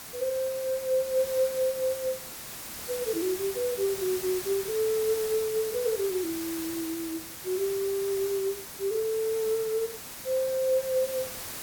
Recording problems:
background hiss; slope -1 dB per octave, SNR 8 dB

